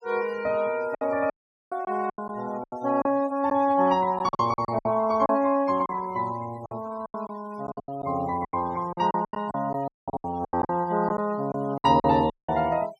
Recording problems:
denoising artefacts; signal-to-artefact ratio 21 dB
lost packets; 12% of the sound replaced, filled with silence
audio cutting out; at 1.5 s, at 10 s and at 12 s

